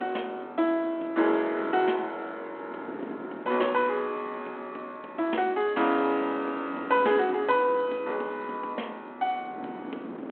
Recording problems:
telephone audio; 240 Hz to 3.4 kHz, G.726
wind on the microphone; below 530 Hz, SNR 16 dB

